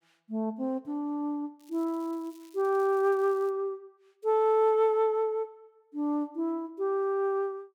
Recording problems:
crackle; from 1.5 to 3.5 s; loose cable, SNR 30 dB

